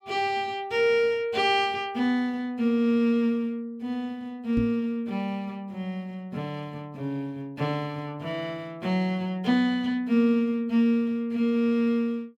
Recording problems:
microphone bump; at 4.5 s; peak 0 dB vs average level

